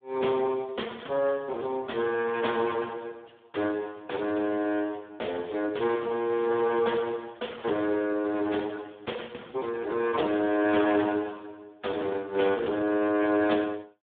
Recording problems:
phone line; 260 Hz to 3.5 kHz, Speex

